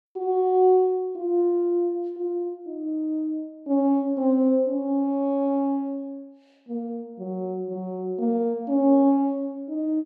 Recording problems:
none

